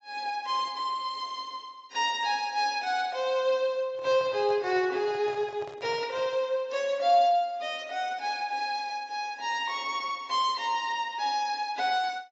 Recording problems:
codec artefacts; AAC, log-spectral distance 2 dB, nothing above 7.3 kHz
microphone handling noise; from 4 to 6.5 s; peak -12 dB vs average level

